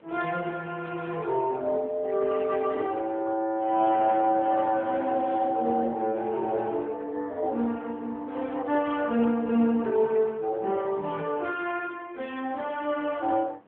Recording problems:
telephone audio; 190 Hz to 3.4 kHz, AMR-NB
wind noise; below 990 Hz, SNR 24 dB

